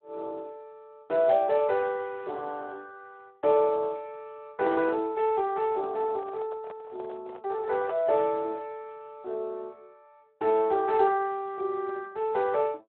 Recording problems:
telephone audio; 280 Hz to 3 kHz, Speex
microphone handling noise; from 5.5 to 8 s; peak -8 dB vs average level

